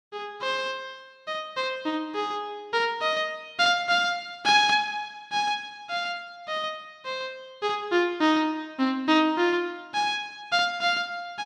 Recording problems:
none

